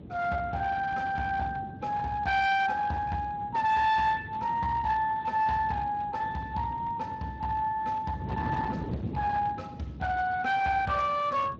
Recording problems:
lossy compression; Speex, log-spectral distance 3 dB
distorted audio; hard clipping, uneven, signal-to-distortion ratio 10 dB
wind noise; below 350 Hz, SNR 13 dB

